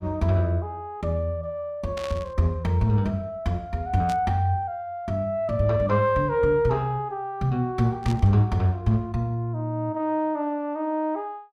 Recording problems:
static burst; at 2 s, at 4 s and at 8 s; peak -8 dB vs average level

